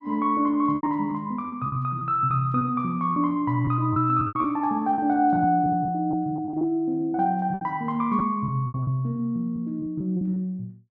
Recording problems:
packet loss; 10% of the sound replaced, filled with repeated pitch periods

